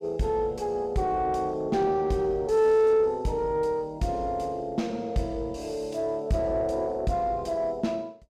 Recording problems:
distorted audio; soft clipping, signal-to-distortion ratio 6 dB

